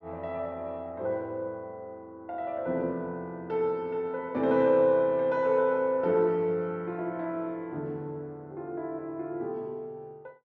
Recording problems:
none

